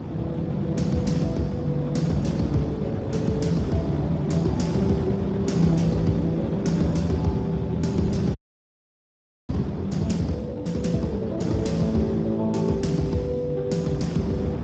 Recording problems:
codec artefacts; Speex, log-spectral distance 3 dB, nothing above 7.3 kHz
wind on the microphone; below 420 Hz, SNR 7 dB
audio freezing; at 8.5 s for 1 s

